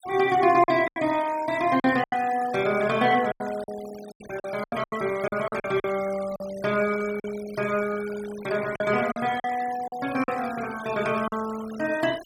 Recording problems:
denoising artefacts; signal-to-artefact ratio 16 dB
lost packets; 9% of the sound replaced, filled with silence

